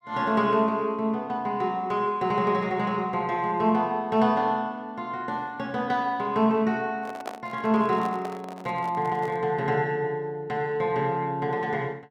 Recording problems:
microphone handling noise; from 7 to 9.5 s; peak -4 dB vs average level

